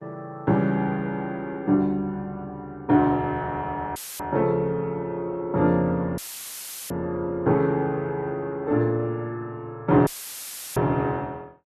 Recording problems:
codec artefacts; Opus, log-spectral distance 2 dB
audio cutting out; at 4 s, at 6 s for 0.5 s and at 10 s for 0.5 s; filled with static

